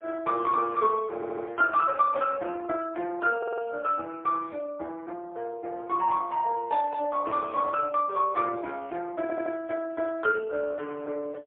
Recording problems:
phone line; 300 Hz to 2.6 kHz, AMR-NB, then MP3
stutter; at 1 s, at 3.5 s and at 9 s

